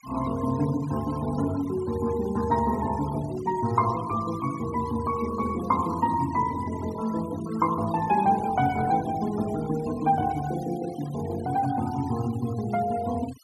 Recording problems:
noise reduction artefacts; signal-to-artefact ratio 17 dB

